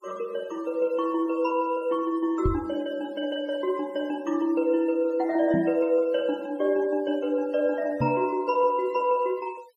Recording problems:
noise reduction artefacts; signal-to-artefact ratio 27 dB
microphone thump; at 2.5 s, at 5.5 s and at 8 s; peak +2 dB vs average level

